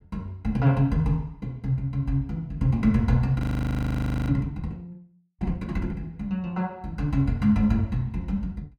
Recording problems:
frozen audio; at 3.5 s for 1 s

